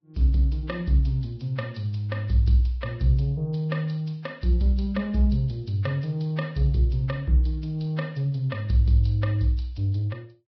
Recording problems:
lossy codec; Vorbis, log-spectral distance 2 dB, nothing above 11.3 kHz

